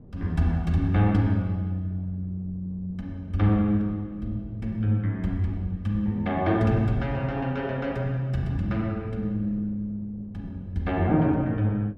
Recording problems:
wind noise; below 270 Hz, SNR 21 dB

